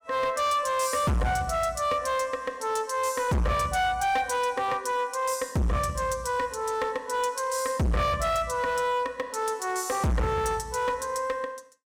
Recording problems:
distortion; hard clipping, signal-to-distortion ratio 6 dB

